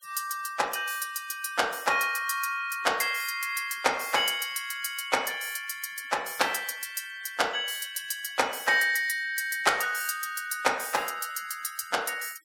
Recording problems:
denoising artefacts; signal-to-artefact ratio 22 dB

